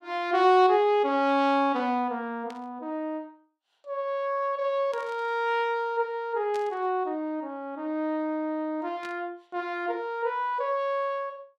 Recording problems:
burst of static; 4 times, first at 2.5 s; peak -12 dB vs average level

